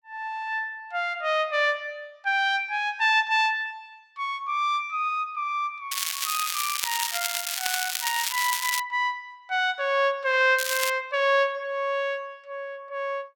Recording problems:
crackling; from 6 to 9 s and at 11 s; loose cable, SNR 2 dB

